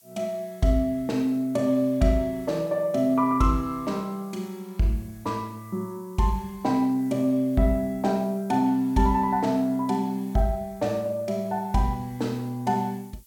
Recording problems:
hiss; SNR 27 dB

